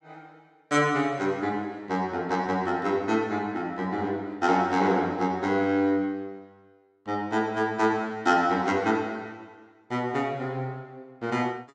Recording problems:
none

